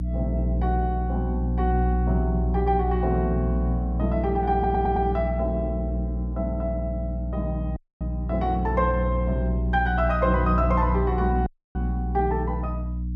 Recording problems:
electrical hum; 60 Hz, harmonics up to 300 Hz, SNR 0 dB
audio stuttering; at 4.5 s
audio cutting out; at 8 s and at 11 s

